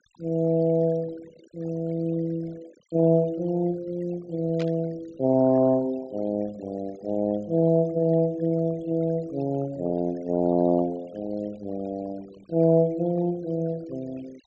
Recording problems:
treble cut off; nothing above 8 kHz
denoising artefacts; signal-to-artefact ratio 24 dB
burst of static; at 4.5 s; peak -11 dB vs average level

